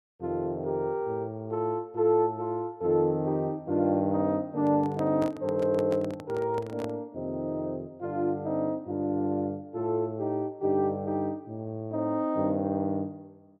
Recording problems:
microphone handling noise; from 4.5 to 7 s; peak -5 dB vs average level

